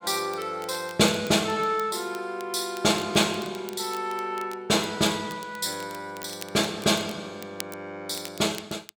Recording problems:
crackle; vinyl, SNR 19 dB

